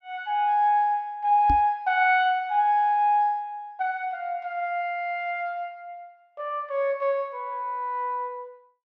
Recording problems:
microphone thump; at 1.5 s; peak -1 dB vs average level

